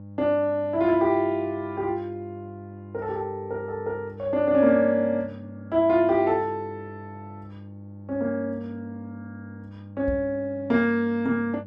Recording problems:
hum; 50 Hz, harmonics up to 800 Hz, SNR 17 dB
microphone thump; at 10 s; peak -4 dB vs average level

